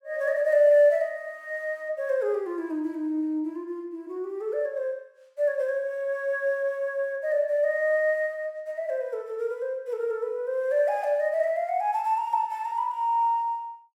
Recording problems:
none

